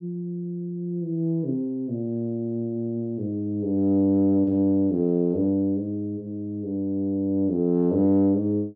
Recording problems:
none

